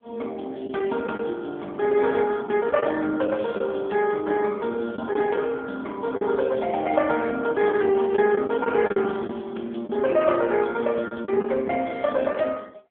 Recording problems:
telephone audio; 220 Hz to 3.4 kHz, AMR-NB
lost packets; 4% of the sound replaced, filled with the last packet

